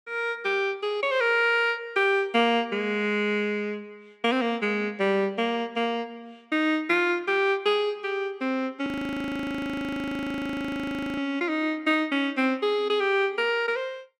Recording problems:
audio freezing; at 9 s for 2.5 s

